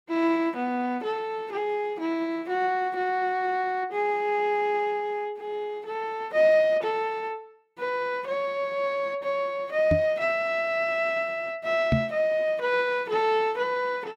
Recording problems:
knock on the microphone; at 10 s and at 12 s; peak +6 dB vs average level

